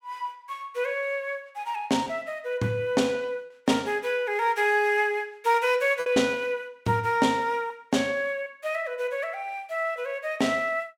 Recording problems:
lost packets; 2% of the sound replaced, filled with repeated pitch periods

